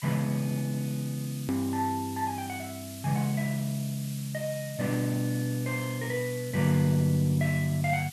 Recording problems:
background hiss; SNR 14 dB
edit click; at 1.5 s

